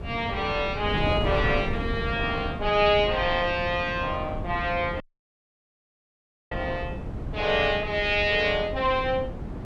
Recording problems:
wind noise; below 280 Hz, SNR 8 dB
dropout; at 5 s for 1.5 s

